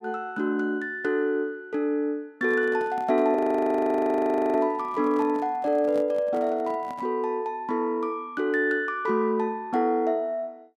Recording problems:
microphone handling noise; from 2.5 to 7 s; peak -11 dB vs average level
frozen audio; at 3.5 s for 1 s

